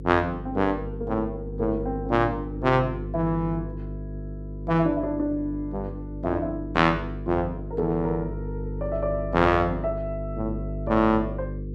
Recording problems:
hum; 50 Hz, harmonics up to 500 Hz, SNR 8 dB

